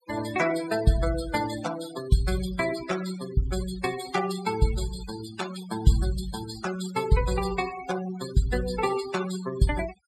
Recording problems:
denoising artefacts; signal-to-artefact ratio 10 dB

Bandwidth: 14 kHz